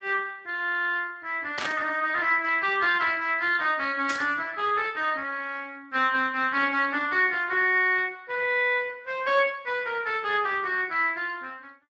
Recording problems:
codec artefacts; Speex, log-spectral distance 4 dB, nothing above 7.6 kHz
static burst; at 1.5 s and at 4 s; peak -2 dB vs average level

